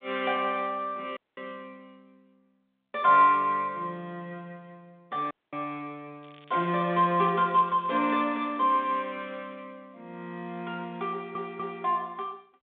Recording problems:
telephone audio; 190 Hz to 3.7 kHz, G.726
dropout; at 1 s and at 5.5 s
crackling; from 6 to 8.5 s; loose cable, SNR 27 dB
stutter; at 11 s

